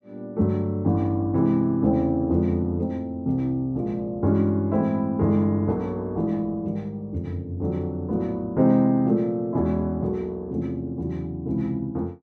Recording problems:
none

